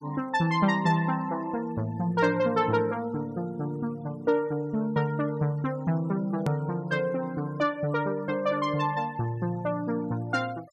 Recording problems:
denoising artefacts; signal-to-artefact ratio 27 dB
click at an edit; at 6.5 s

